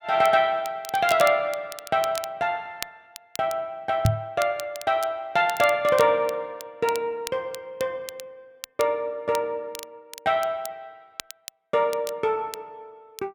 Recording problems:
crackling; vinyl, SNR 16 dB
knock on the microphone; at 4 s; peak +7 dB vs average level

